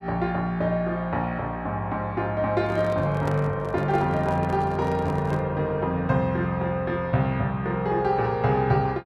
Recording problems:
microphone handling noise; from 2.5 to 5.5 s; peak -3 dB vs average level

